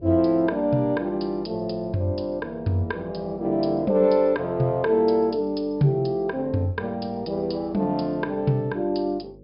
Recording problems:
treble missing; nothing above 5.5 kHz
electrical hum; 50 Hz, harmonics up to 550 Hz, SNR 25 dB

